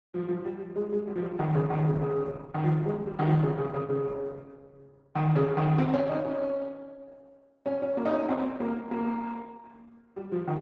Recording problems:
lossy compression; Opus, log-spectral distance 3 dB

